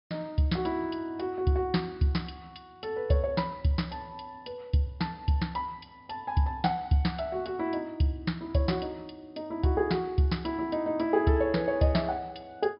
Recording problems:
treble missing; nothing above 5.5 kHz

